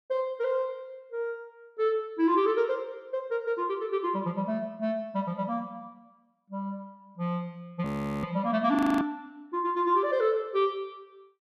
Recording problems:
frozen audio; at 8 s and at 9 s

